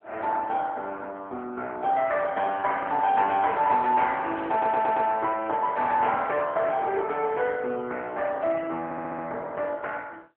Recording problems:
telephone audio; 280 Hz to 3.6 kHz, AMR-NB
audio stuttering; at 4.5 s and at 9 s

